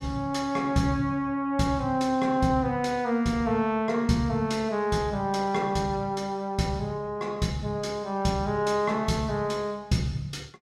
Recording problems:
none

